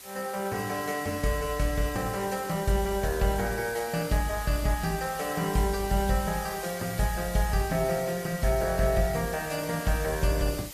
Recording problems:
lossy codec; Opus, log-spectral distance 7 dB, nothing above 14.3 kHz
background hiss; slope +1 dB per octave, SNR 13 dB

